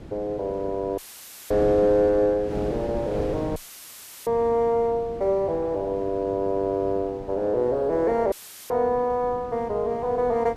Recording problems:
wind noise; below 400 Hz, SNR 14 dB
dropout; at 1 s for 0.5 s, at 3.5 s for 0.5 s and at 8.5 s; filled with static

